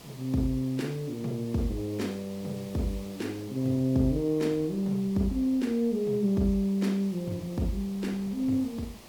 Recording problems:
background hiss; SNR 20 dB
wind on the microphone; below 500 Hz, SNR 25 dB

